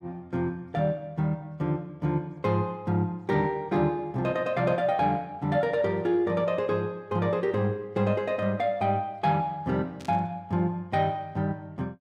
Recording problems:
burst of static; at 10 s; peak -13 dB vs average level

